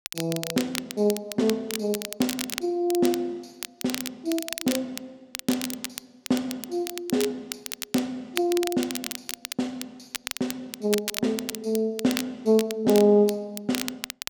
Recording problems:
crackle; vinyl, SNR 8 dB

